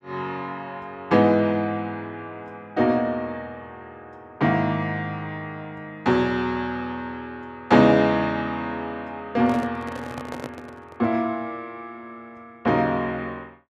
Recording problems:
handling noise; from 9.5 to 11 s; peak -6 dB vs average level

